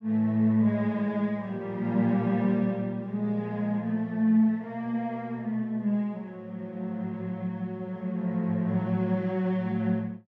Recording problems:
none

